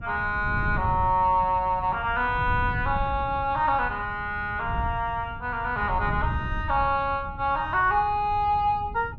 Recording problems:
wind on the microphone; below 130 Hz, SNR 10 dB

